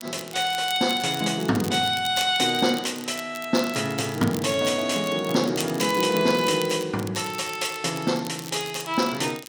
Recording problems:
crackle; vinyl, SNR 15 dB

